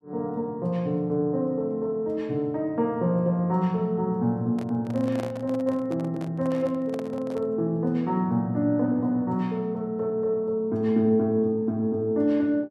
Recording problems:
handling noise; from 4.5 to 7.5 s; peak -7 dB vs average level

